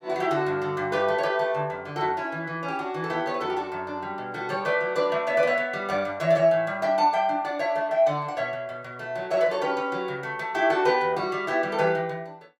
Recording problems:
none

